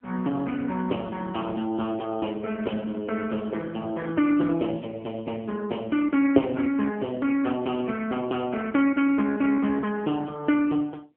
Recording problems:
phone line; 240 Hz to 3.5 kHz, AMR-NB

